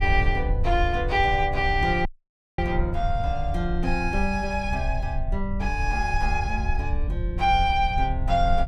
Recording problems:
rumble; below 68 Hz, SNR 4 dB
audio cutting out; at 2 s for 0.5 s

